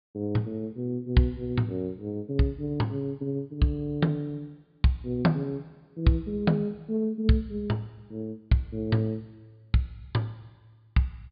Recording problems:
treble missing; nothing above 4.9 kHz

